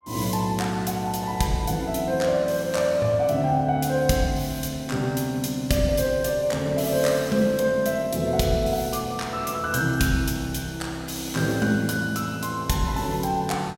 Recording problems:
none

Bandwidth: 16.5 kHz